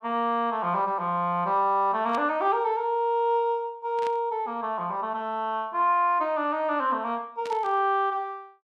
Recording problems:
burst of static; at 2 s, at 4 s and at 7.5 s; peak -10 dB vs average level

